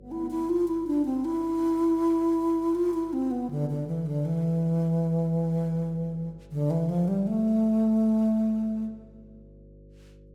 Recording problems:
hum; 50 Hz, harmonics up to 550 Hz, SNR 26 dB

